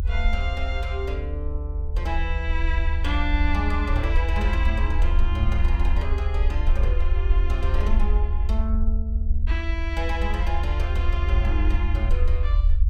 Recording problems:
rumble; below 72 Hz, SNR -6 dB

